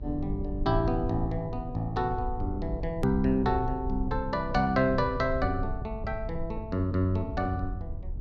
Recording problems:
hum; 50 Hz, harmonics up to 500 Hz, SNR 18 dB
rumble; below 74 Hz, SNR 9 dB
hard cut with a click; at 3 s

